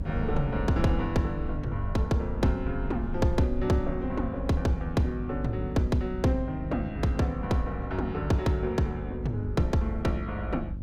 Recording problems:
electrical hum; 50 Hz, harmonics up to 600 Hz, SNR 12 dB
low-frequency rumble; below 74 Hz, SNR 9 dB
wind noise; below 150 Hz, SNR 18 dB

